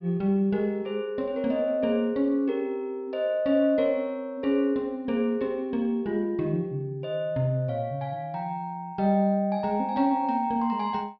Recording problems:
treble cut off; nothing above 5.5 kHz

